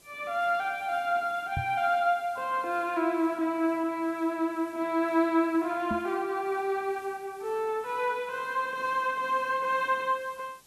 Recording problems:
background hiss; SNR 27 dB
knock on the microphone; at 1.5 s and at 6 s; peak -1 dB vs average level

